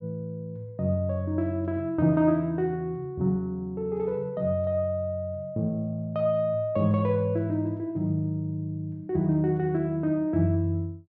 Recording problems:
none

